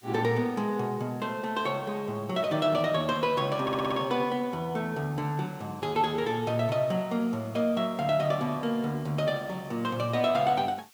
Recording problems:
hiss; SNR 26 dB
stutter; at 3.5 s

